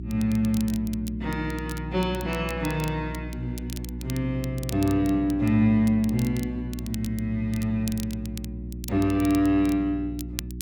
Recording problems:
hum; 60 Hz, harmonics up to 360 Hz, SNR 10 dB
crackle; vinyl, SNR 17 dB

